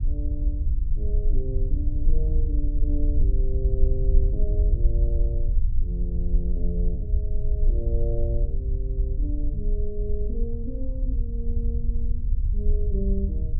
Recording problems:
low-frequency rumble; below 56 Hz, SNR -9 dB

